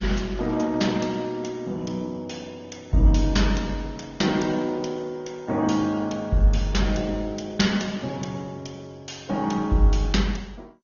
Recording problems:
lossy codec; Opus, then MP2, log-spectral distance 5 dB, nothing above 6.7 kHz

